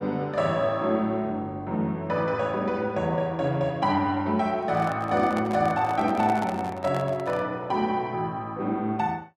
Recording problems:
handling noise; from 4.5 to 7.5 s; peak -5 dB vs average level

